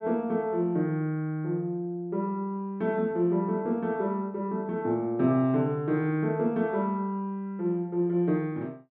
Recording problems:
none

